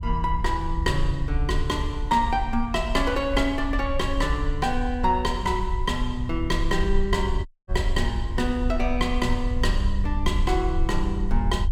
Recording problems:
low-frequency rumble; below 60 Hz, SNR 3 dB
dropout; at 7.5 s

